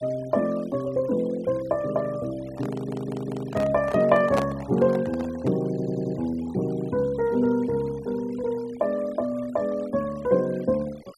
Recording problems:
noise reduction artefacts; signal-to-artefact ratio 22 dB
handling noise; from 2.5 to 5.5 s; peak +2 dB vs average level
stutter; at 2.5 s and at 5.5 s

